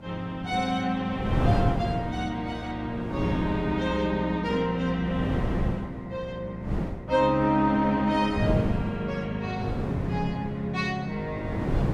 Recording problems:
wind on the microphone; below 310 Hz, SNR 4 dB

